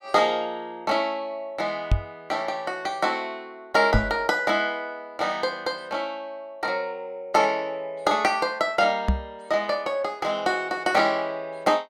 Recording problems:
microphone thump; at 2 s, at 4 s and at 9 s; peak +7 dB vs average level

